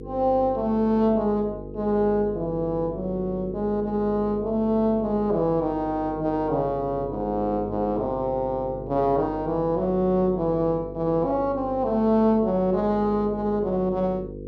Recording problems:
mains hum; 50 Hz, harmonics up to 500 Hz, SNR 12 dB

